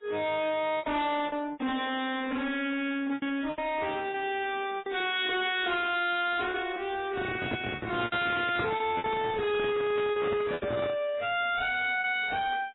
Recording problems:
codec artefacts; AAC, then MP3, log-spectral distance 5 dB, nothing above 3.7 kHz
distortion; soft clipping, signal-to-distortion ratio 6 dB
lost packets; 9% of the sound replaced, filled with repeated pitch periods
handling noise; from 7 to 11 s; peak +4 dB vs average level

